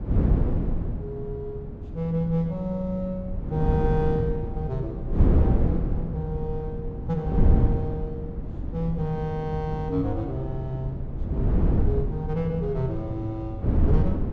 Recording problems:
wind on the microphone; below 170 Hz, SNR -3 dB

